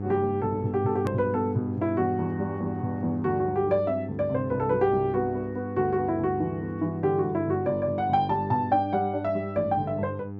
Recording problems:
treble cut off; nothing above 8 kHz
hum; 50 Hz, harmonics up to 900 Hz, SNR 9 dB
click at an edit; at 1 s

